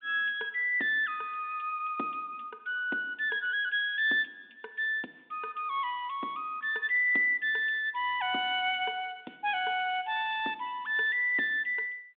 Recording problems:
telephone audio; 220 Hz to 3.6 kHz, G.726

